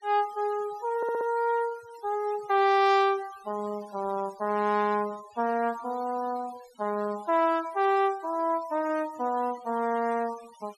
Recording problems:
denoising artefacts; signal-to-artefact ratio 21 dB
stutter; at 1 s

